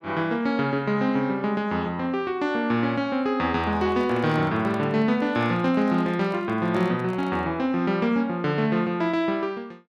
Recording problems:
microphone handling noise; from 3.5 to 7.5 s; peak -9 dB vs average level

